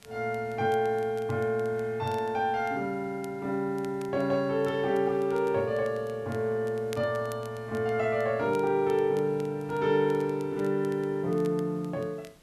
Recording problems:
hiss; slope -3 dB per octave, SNR 29 dB
crackling; vinyl, SNR 26 dB

